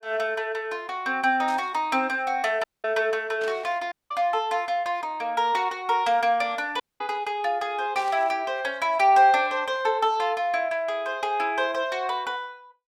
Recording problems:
static burst; at 1.5 s, at 3.5 s and at 8 s; peak -11 dB vs average level
dropout; at 2.5 s, at 4 s and at 7 s

